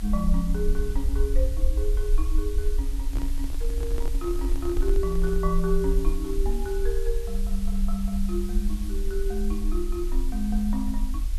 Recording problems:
background hiss; slope 0 dB per octave, SNR 15 dB
rumble; below 48 Hz, strongest tone 24 Hz, SNR -2 dB
handling noise; from 3 to 5.5 s; peak -3 dB vs average level

